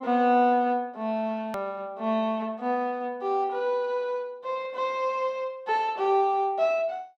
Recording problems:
edit click; at 1.5 s

